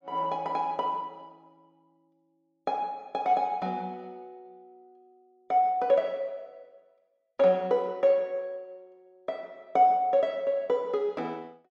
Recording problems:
none

